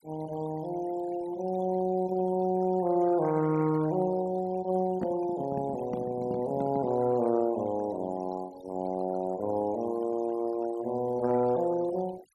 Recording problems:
noise reduction artefacts; signal-to-artefact ratio 20 dB
microphone handling noise; from 5 to 7 s; peak 0 dB vs average level

